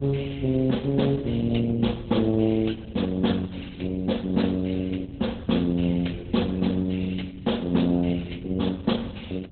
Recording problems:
codec artefacts; Opus, log-spectral distance 5 dB, nothing above 4 kHz
wind on the microphone; below 140 Hz, SNR 14 dB

